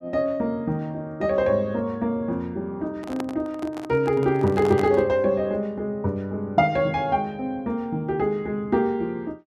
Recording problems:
microphone handling noise; from 3 to 5 s; peak -3 dB vs average level

